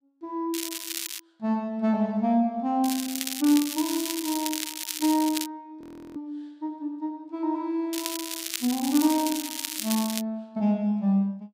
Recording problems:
crackling; at 0.5 s, from 3 to 5.5 s and from 8 to 10 s; loose cable, SNR 5 dB
frozen audio; at 6 s

